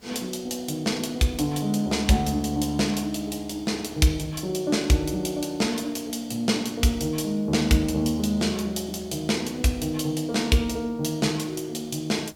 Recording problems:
hiss; slope -4 dB per octave, SNR 28 dB

